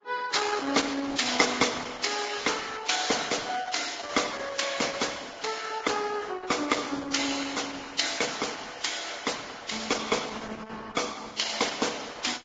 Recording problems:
codec artefacts; Opus, then Vorbis, log-spectral distance 8 dB, nothing above 7.3 kHz

